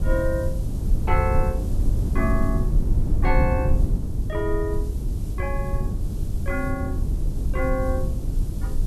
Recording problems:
hum; 60 Hz, harmonics up to 420 Hz, SNR 22 dB
hiss; SNR 21 dB
low-frequency rumble; below 94 Hz, SNR -3 dB

